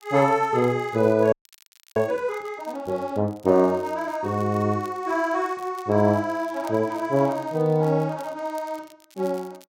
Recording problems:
crackling; vinyl, SNR 28 dB
frozen audio; at 1.5 s for 0.5 s

